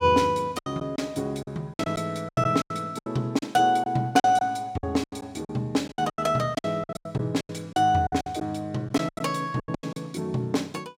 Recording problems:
lost packets; 15% of the sound replaced, filled with silence

